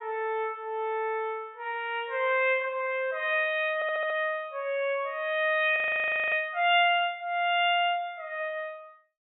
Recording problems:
low-pass filter; nothing above 4 kHz
stutter; at 4 s
audio freezing; at 6 s for 0.5 s

